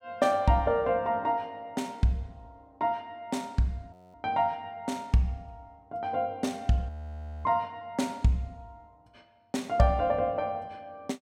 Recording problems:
audio freezing; at 4 s and at 7 s for 0.5 s

